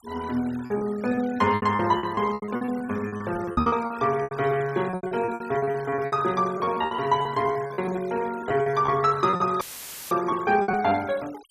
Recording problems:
denoising artefacts; signal-to-artefact ratio 19 dB
lost packets; 18% of the sound replaced, filled with repeated pitch periods
microphone bump; at 3.5 s; peak +3 dB vs average level
audio cutting out; at 9.5 s for 0.5 s; filled with static

